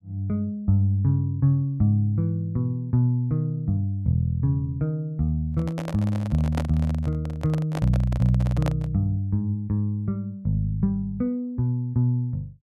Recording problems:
microphone handling noise; from 5.5 to 9 s; peak -2 dB vs average level

